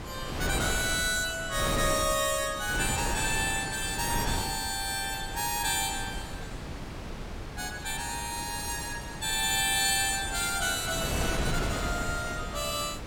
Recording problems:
wind on the microphone; below 790 Hz, SNR 7 dB

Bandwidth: 17.5 kHz